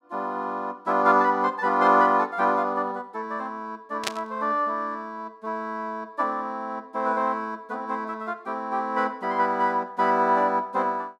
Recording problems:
static burst; at 4 s; peak +3 dB vs average level

